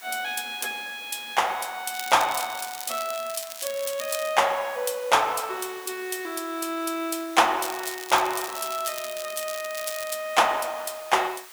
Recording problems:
hiss; SNR 17 dB
crackling; from 2 to 4.5 s and from 7.5 to 10 s; loose cable, SNR 10 dB

